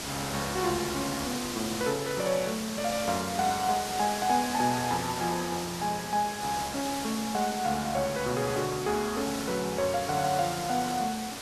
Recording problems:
hiss; slope -2 dB per octave, SNR 6 dB

